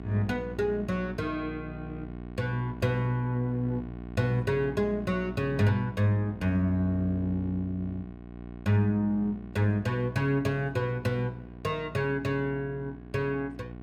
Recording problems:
electrical hum; 60 Hz, harmonics up to 1.1 kHz, SNR 13 dB

